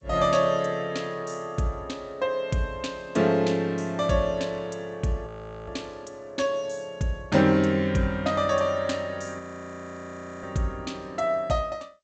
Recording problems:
lossy compression; G.722, log-spectral distance 2 dB, nothing above 7.8 kHz
audio freezing; at 5.5 s and at 9.5 s for 1 s

